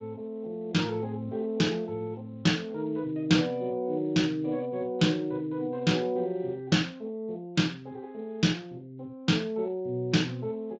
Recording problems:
lossy codec; Speex, log-spectral distance 2 dB

